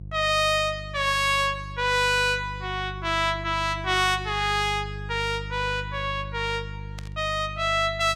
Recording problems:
hum; 50 Hz, harmonics up to 350 Hz, SNR 13 dB
burst of static; at 7 s; peak -12 dB vs average level

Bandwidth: 16.5 kHz